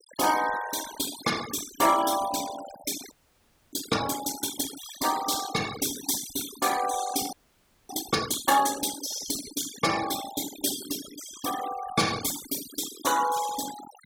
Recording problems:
noise reduction artefacts; signal-to-artefact ratio 10 dB
frozen audio; at 3 s for 0.5 s and at 7.5 s for 0.5 s

